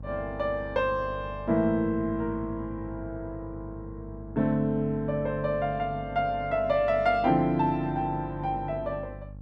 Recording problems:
electrical hum; 50 Hz, harmonics up to 550 Hz, SNR 14 dB

